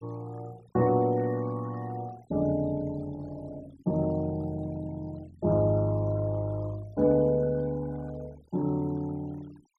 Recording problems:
denoising artefacts; signal-to-artefact ratio 26 dB

